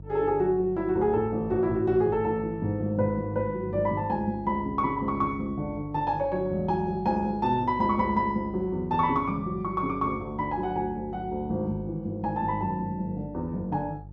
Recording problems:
electrical hum; 50 Hz, harmonics up to 500 Hz, SNR 16 dB

